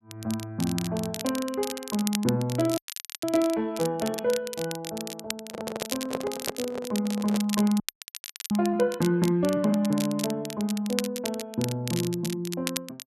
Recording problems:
crackle; vinyl, SNR 9 dB
audio freezing; at 3 s and at 8 s for 0.5 s
handling noise; from 5.5 to 7.5 s; peak 0 dB vs average level

